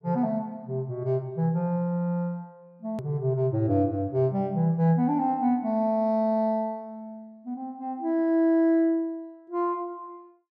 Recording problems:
click at an edit; at 3 s

